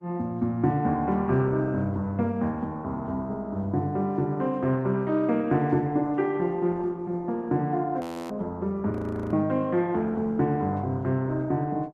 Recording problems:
lossy compression; Opus, log-spectral distance 2 dB, nothing above 13.1 kHz
audio freezing; at 8 s and at 9 s

